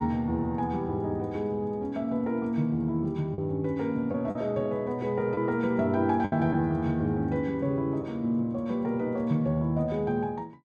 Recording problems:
lost packets; 2% of the sound replaced, filled with the last packet

